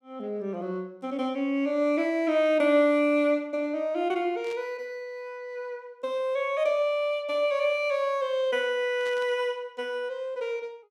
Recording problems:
static burst; at 4.5 s and at 9 s; peak -14 dB vs average level

